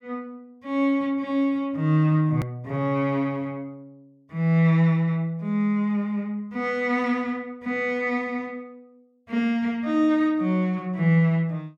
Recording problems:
hard cut with a click; at 2.5 s

